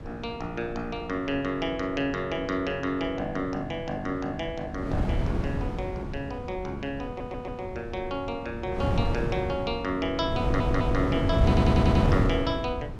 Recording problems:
wind on the microphone; below 260 Hz, SNR -2 dB
stutter; at 7 s, at 10 s and at 11 s

